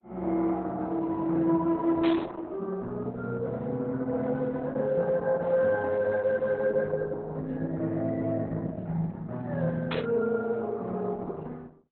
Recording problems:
lossy codec; Opus, log-spectral distance 2 dB, nothing above 4 kHz
static burst; at 2 s and at 10 s; peak -2 dB vs average level

